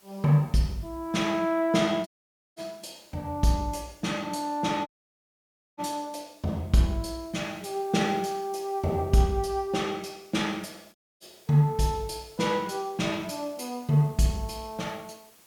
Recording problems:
background hiss; slope -2 dB per octave, SNR 28 dB
audio cutting out; at 2 s, at 5 s for 1 s and at 11 s

